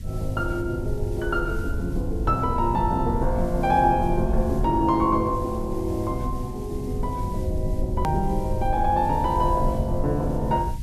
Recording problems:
background hiss; SNR 25 dB
rumble; below 82 Hz, SNR 6 dB
hard cut with a click; at 8 s

